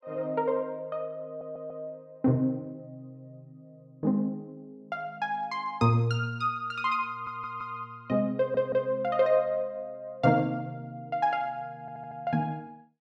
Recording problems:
audio stuttering; 4 times, first at 1.5 s

